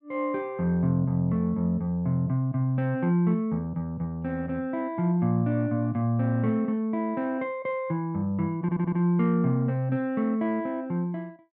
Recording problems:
stutter; at 8.5 s

